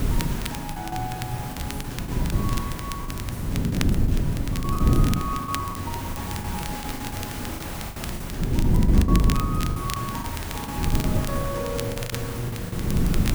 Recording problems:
background hiss; slope -3 dB per octave, SNR 4 dB
wind noise; below 190 Hz, SNR -6 dB
crackle; vinyl, SNR 5 dB
packet loss; 12% of the sound replaced, filled with the last packet

